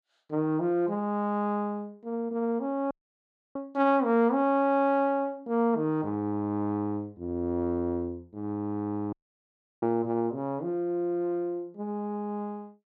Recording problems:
dropout; at 3 s for 0.5 s and at 9 s for 0.5 s

